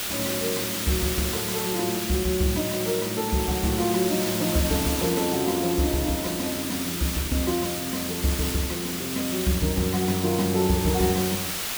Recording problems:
hiss; slope +1 dB per octave, SNR 3 dB

